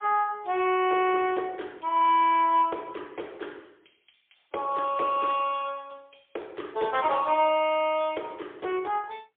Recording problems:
phone line; 300 Hz to 3.5 kHz, AMR-NB, then MP3

